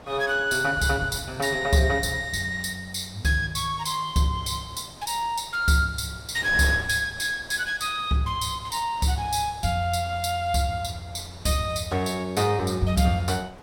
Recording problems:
wind on the microphone; below 1 kHz, SNR 20 dB

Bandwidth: 17 kHz